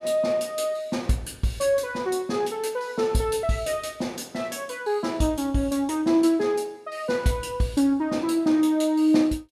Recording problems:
none

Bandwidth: 14.5 kHz